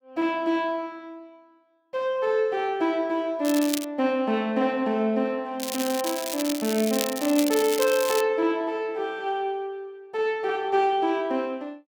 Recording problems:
crackle; at 3.5 s and from 5.5 to 8 s; loose cable, SNR 7 dB

